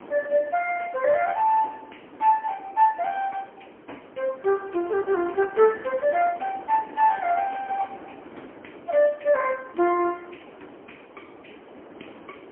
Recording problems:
phone line; 260 Hz to 3 kHz, AMR-NB, then MP3
wind on the microphone; below 870 Hz, SNR 20 dB

